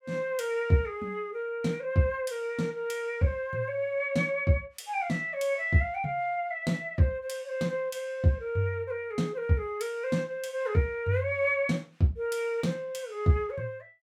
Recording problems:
none

